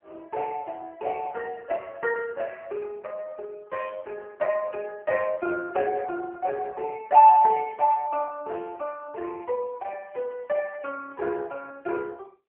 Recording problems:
telephone audio; 300 Hz to 2.5 kHz, AMR-NB

